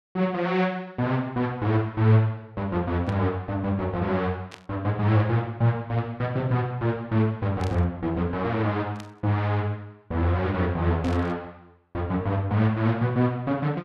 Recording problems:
static burst; 5 times, first at 3 s; peak -11 dB vs average level

